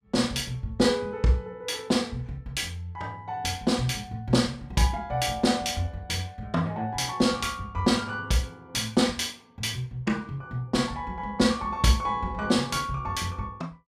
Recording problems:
none

